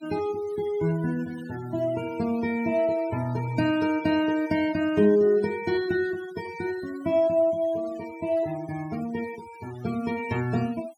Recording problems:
denoising artefacts; signal-to-artefact ratio 20 dB

